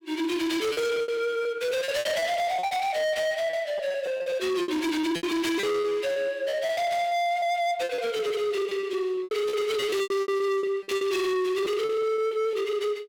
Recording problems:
distortion; hard clipping, signal-to-distortion ratio 6 dB
lost packets; 17% of the sound replaced, filled with repeated pitch periods

